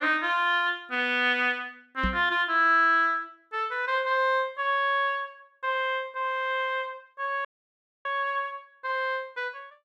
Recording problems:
microphone bump; at 2 s; peak 0 dB vs average level
audio cutting out; at 7.5 s for 0.5 s

